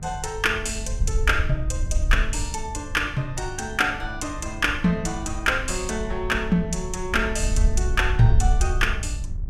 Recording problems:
mains hum; 50 Hz, harmonics up to 600 Hz, SNR 17 dB
wind noise; below 64 Hz, SNR 4 dB

